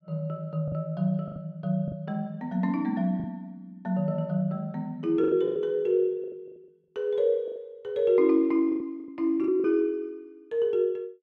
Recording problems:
lost packets; 8% of the sound replaced, filled with the last packet

